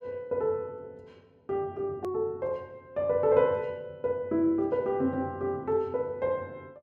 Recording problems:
edit click; at 2 s

